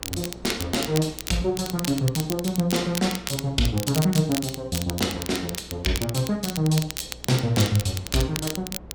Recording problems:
electrical hum; 60 Hz, harmonics up to 480 Hz, SNR 23 dB
wind noise; below 540 Hz, SNR 24 dB
crackle; vinyl, SNR 8 dB

